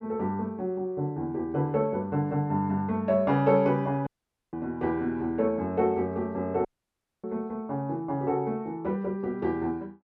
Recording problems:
dropout; at 4 s and at 6.5 s for 0.5 s

